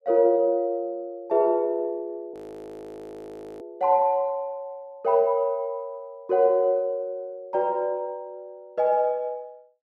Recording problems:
audio freezing; at 2.5 s for 1.5 s

